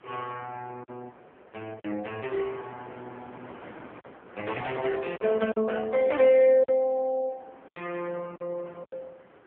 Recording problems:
phone line; 260 Hz to 3.3 kHz, AMR-NB
wind on the microphone; below 1.3 kHz, SNR 22 dB
lost packets; 4% of the sound replaced, filled with silence

